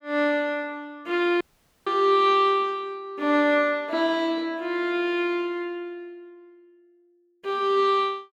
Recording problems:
dropout; at 1.5 s

